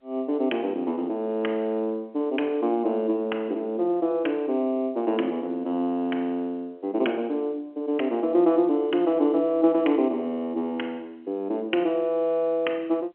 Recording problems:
phone line; 260 Hz to 3.2 kHz, G.711

